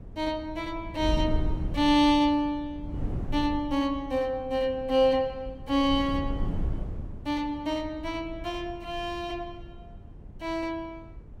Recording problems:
wind on the microphone; below 130 Hz, SNR 10 dB

